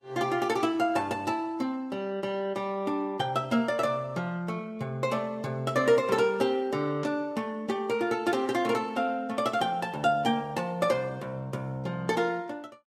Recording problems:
lossy codec; Vorbis, log-spectral distance 2 dB, nothing above 13.8 kHz

